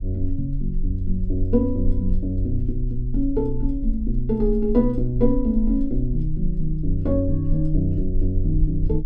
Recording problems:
rumble; below 40 Hz, strongest tone 20 Hz, SNR 5 dB

